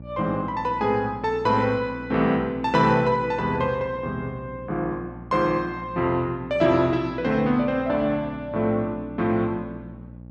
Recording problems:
hum; 60 Hz, harmonics up to 600 Hz, SNR 17 dB

